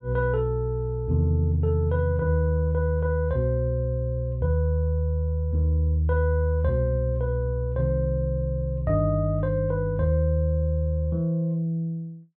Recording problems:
none

